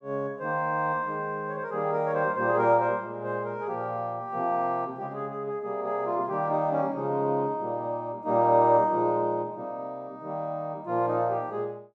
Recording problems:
none

